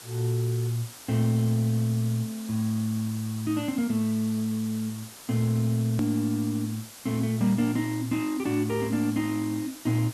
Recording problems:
background hiss; slope -1 dB per octave, SNR 16 dB
click at an edit; at 6 s

